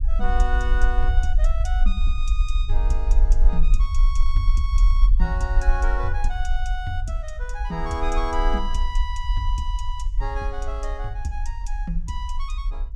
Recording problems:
low-frequency rumble; below 44 Hz, SNR -6 dB

